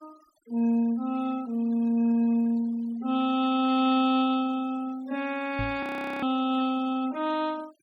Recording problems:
noise reduction artefacts; signal-to-artefact ratio 22 dB
microphone bump; at 5.5 s; peak -4 dB vs average level
audio freezing; at 6 s

